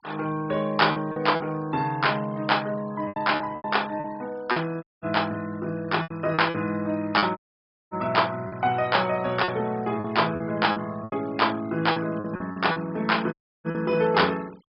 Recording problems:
treble missing; nothing above 5.3 kHz
noise reduction artefacts; signal-to-artefact ratio 22 dB
packet loss; 8% of the sound replaced, filled with repeated pitch periods
dropout; at 5 s, at 7.5 s for 0.5 s and at 13 s

